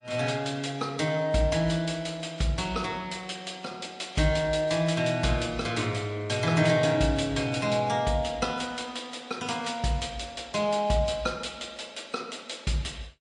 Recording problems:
lossy compression; MP3, log-spectral distance 3 dB, nothing above 9 kHz

